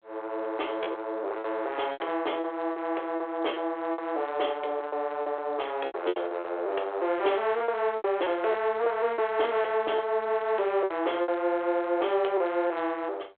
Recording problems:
phone line; 320 Hz to 3.5 kHz, G.726
lost packets; 8% of the sound replaced, filled with repeated pitch periods

